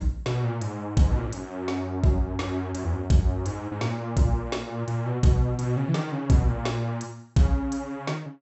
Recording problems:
treble missing; nothing above 7.8 kHz

